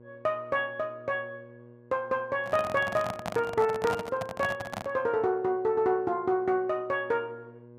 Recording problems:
hum; 60 Hz, harmonics up to 1.1 kHz, SNR 23 dB
microphone handling noise; from 2.5 to 5 s; peak -1 dB vs average level

